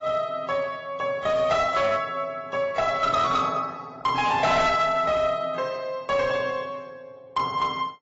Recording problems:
lossy codec; AAC, log-spectral distance 2 dB, nothing above 7.6 kHz
distortion; hard clipping, uneven, signal-to-distortion ratio 10 dB

